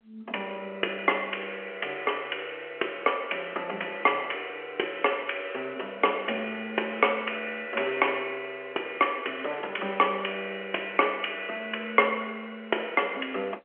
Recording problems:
telephone audio; 320 Hz to 3.2 kHz, G.711

